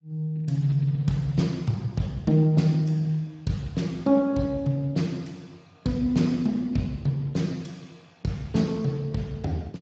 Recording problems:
codec artefacts; Speex, log-spectral distance 3 dB, nothing above 7.3 kHz

